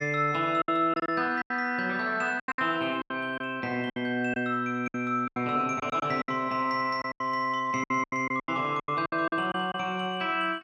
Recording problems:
lost packets; 13% of the sound replaced, filled with silence

